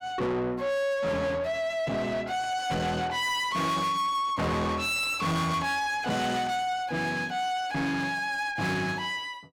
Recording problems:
distortion; soft clipping, signal-to-distortion ratio 7 dB

